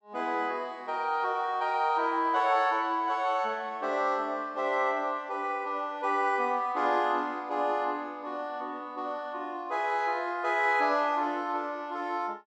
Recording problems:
none

